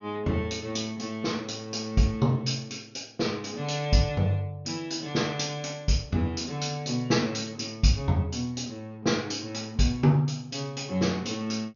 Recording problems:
treble cut off; nothing above 6.7 kHz

